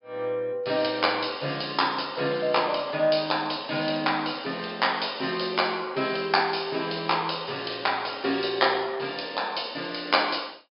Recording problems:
treble cut off; nothing above 5.5 kHz

